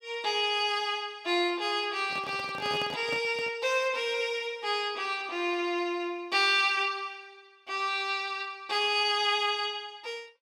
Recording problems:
handling noise; from 2 to 3.5 s; peak -7 dB vs average level

